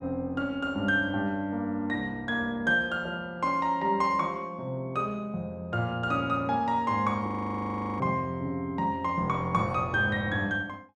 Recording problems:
audio freezing; at 7.5 s for 0.5 s

